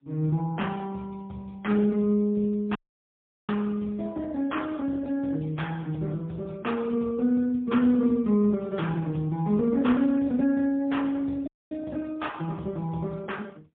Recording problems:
telephone audio; 110 Hz to 3.6 kHz, AMR-NB, then MP3
audio cutting out; at 3 s for 0.5 s and at 11 s

